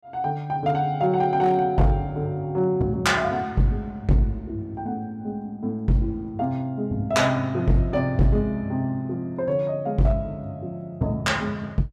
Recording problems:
distorted audio; hard clipping, signal-to-distortion ratio 11 dB

